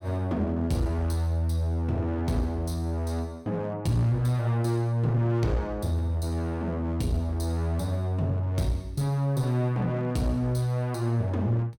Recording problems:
distortion; hard clipping, uneven, signal-to-distortion ratio 10 dB

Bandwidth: 17.5 kHz